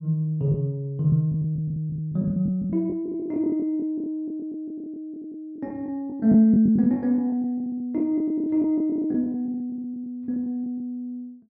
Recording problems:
lost packets; 15% of the sound replaced, filled with the last packet

